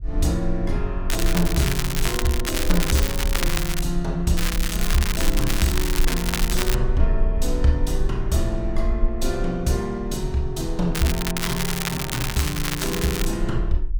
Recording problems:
rumble; below 42 Hz, strongest tone 20 Hz, SNR 4 dB
crackling; from 1 to 4 s, from 4.5 to 7 s and from 11 to 13 s; loose cable, SNR 2 dB

